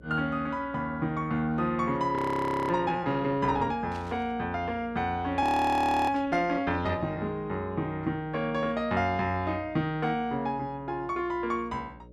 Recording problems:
hum; 60 Hz, harmonics up to 600 Hz, SNR 22 dB
frozen audio; at 2 s for 0.5 s and at 5.5 s for 0.5 s
burst of static; at 4 s and at 6 s; peak -14 dB vs average level

